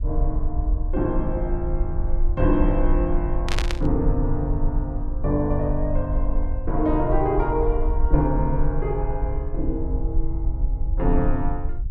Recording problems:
low-frequency rumble; below 50 Hz, SNR 1 dB
burst of static; at 3.5 s; peak +2 dB vs average level

